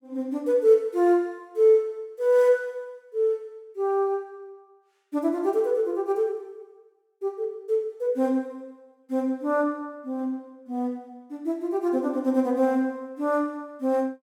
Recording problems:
none

